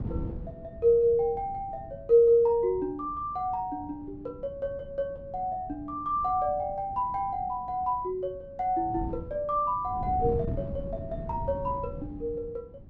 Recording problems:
wind noise; below 210 Hz, SNR 13 dB

